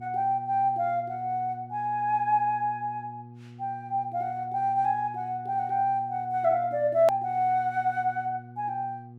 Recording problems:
hum; 60 Hz, harmonics up to 720 Hz, SNR 18 dB
hard cut with a click; at 7 s

